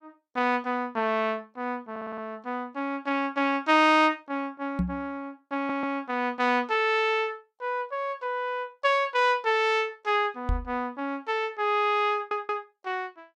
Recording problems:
stutter; at 2 s, at 5.5 s and at 12 s
microphone thump; at 5 s and at 10 s; peak +3 dB vs average level

